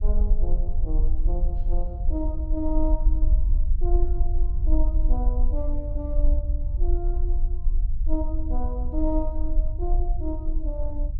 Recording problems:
rumble; below 46 Hz, strongest tone 20 Hz, SNR -8 dB

